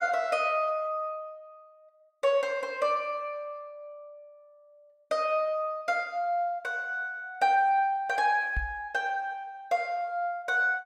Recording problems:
microphone thump; at 8.5 s; peak -1 dB vs average level

